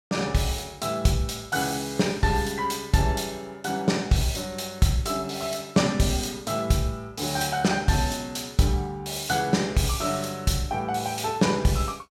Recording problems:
none

